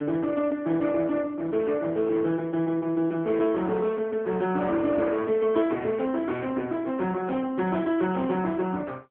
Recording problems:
phone line; 190 Hz to 3.4 kHz, AMR-NB

